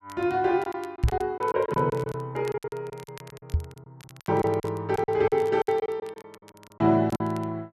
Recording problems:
crackling; vinyl, SNR 25 dB
lost packets; 14% of the sound replaced, filled with silence
microphone thump; at 1 s and at 3.5 s; peak +7 dB vs average level

